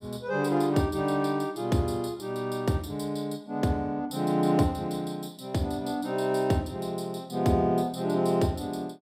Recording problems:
none

